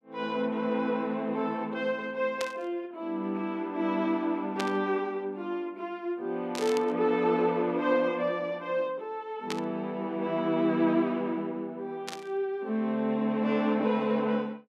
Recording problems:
burst of static; 5 times, first at 2.5 s; peak -1 dB vs average level

